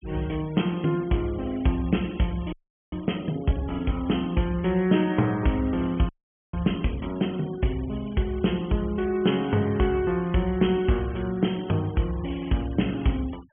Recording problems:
treble cut off; nothing above 3.3 kHz
noise reduction artefacts; signal-to-artefact ratio 24 dB
frozen audio; at 2.5 s and at 6 s

